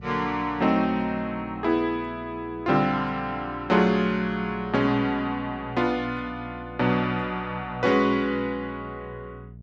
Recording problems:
mains hum; 60 Hz, harmonics up to 420 Hz, SNR 18 dB

